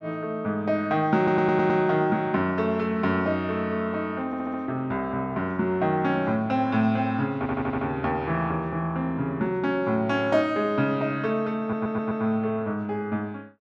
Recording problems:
audio stuttering; 4 times, first at 1 s

